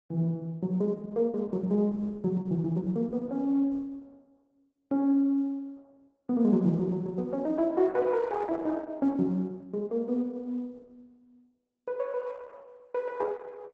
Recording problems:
lossy codec; Opus, log-spectral distance 2 dB, nothing above 7.3 kHz

